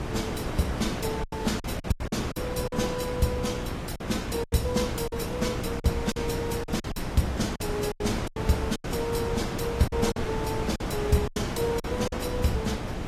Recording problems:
codec artefacts; AAC, log-spectral distance 3 dB
hum; 60 Hz, harmonics up to 840 Hz, SNR 11 dB
wind on the microphone; below 830 Hz, SNR 3 dB
packet loss; 10% of the sound replaced, filled with silence

